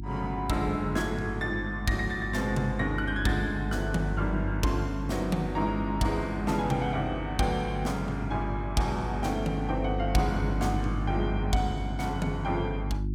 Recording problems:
hum; 50 Hz, harmonics up to 350 Hz, SNR 4 dB

